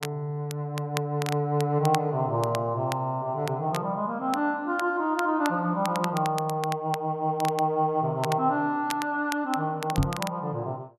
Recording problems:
crackling; vinyl, SNR 13 dB
knock on the microphone; at 10 s; peak +6 dB vs average level

